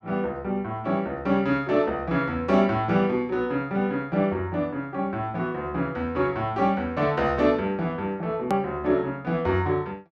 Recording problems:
edit click; at 8.5 s

